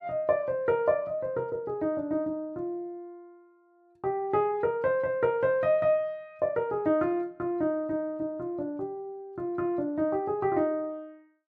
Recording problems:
none

